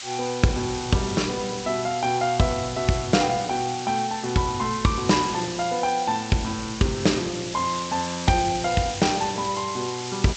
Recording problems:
lossy codec; G.722, log-spectral distance 14 dB, nothing above 7.8 kHz
hiss; slope +4 dB per octave, SNR 9 dB

